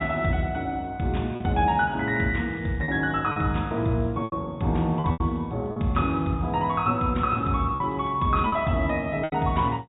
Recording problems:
low-pass filter; nothing above 4 kHz
lost packets; 5% of the sound replaced, filled with repeated pitch periods

